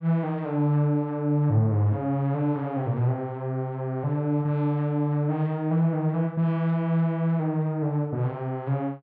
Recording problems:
none

